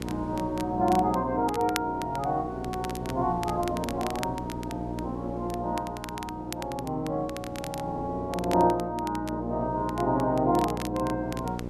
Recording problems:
hum; 60 Hz, harmonics up to 1 kHz, SNR 8 dB
wind on the microphone; below 460 Hz, SNR 19 dB
crackling; vinyl, SNR 14 dB

